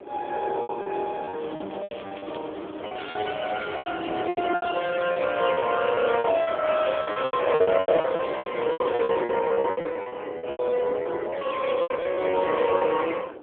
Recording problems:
telephone audio; 300 Hz to 3.3 kHz, AMR-NB
wind on the microphone; below 640 Hz, SNR 14 dB
packet loss; 18% of the sound replaced, filled with repeated pitch periods
crackling; from 1.5 to 5.5 s; loose cable, SNR 22 dB

